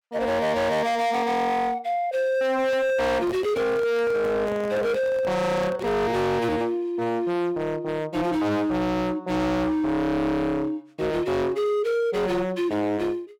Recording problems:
distorted audio; hard clipping, signal-to-distortion ratio 6 dB
microphone handling noise; from 2.5 to 6 s; peak -6 dB vs average level

